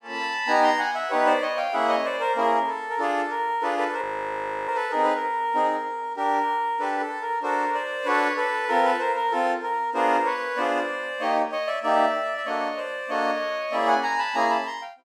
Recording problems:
audio freezing; at 4 s for 0.5 s

